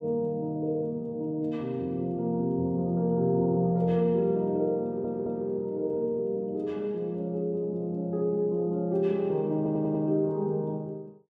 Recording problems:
stutter; at 5 s and at 9.5 s

